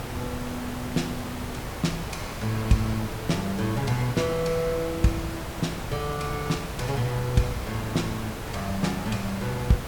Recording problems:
electrical hum; 60 Hz, harmonics up to 420 Hz, SNR 24 dB
hiss; slope -5 dB per octave, SNR 6 dB
wind on the microphone; below 360 Hz, SNR 20 dB

